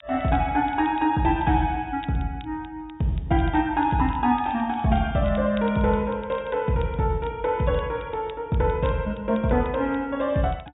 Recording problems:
treble cut off; nothing above 4 kHz
crackling; vinyl, SNR 27 dB

